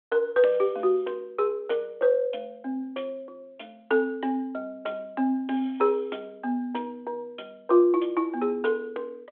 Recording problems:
phone line; 220 Hz to 3.5 kHz, G.726

